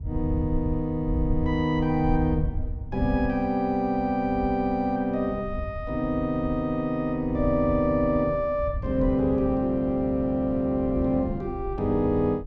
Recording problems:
wind noise; below 86 Hz, SNR 10 dB

